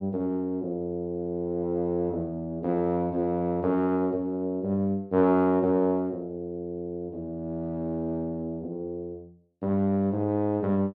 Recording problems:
none

